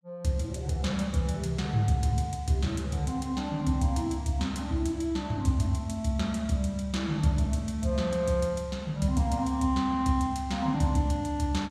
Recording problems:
none

